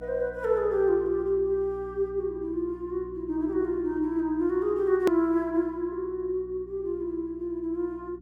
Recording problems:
mains hum; 60 Hz, harmonics up to 300 Hz, SNR 21 dB
hard cut with a click; at 5 s

